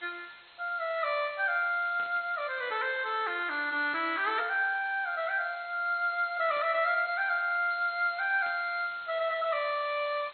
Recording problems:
lossy codec; MP2, log-spectral distance 11 dB, nothing above 4.2 kHz
hiss; SNR 22 dB
static burst; 4 times, first at 2 s; peak -14 dB vs average level

